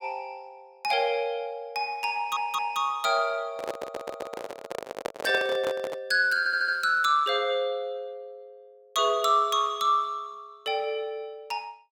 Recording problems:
stutter; at 2 s, at 3.5 s and at 6.5 s
handling noise; from 3.5 to 6 s; peak -1 dB vs average level

